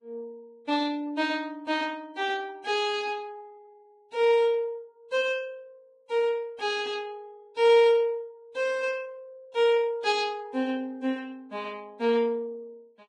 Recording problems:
codec artefacts; Vorbis, log-spectral distance 2 dB

